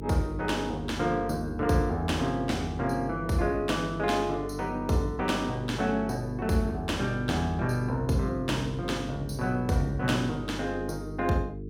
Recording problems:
hum; 50 Hz, harmonics up to 450 Hz, SNR 9 dB

